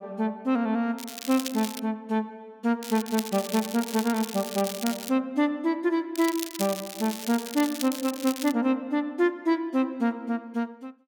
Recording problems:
crackle; at 1 s, from 3 to 5 s and from 6 to 8.5 s; loose cable, SNR 9 dB

